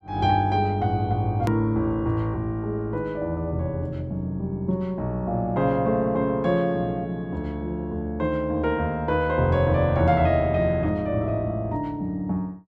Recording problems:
hard cut with a click; at 1.5 s

